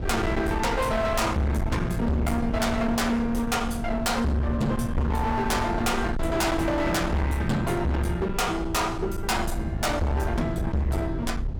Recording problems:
distortion; hard clipping, uneven, signal-to-distortion ratio 5 dB
low-frequency rumble; below 180 Hz, SNR 6 dB

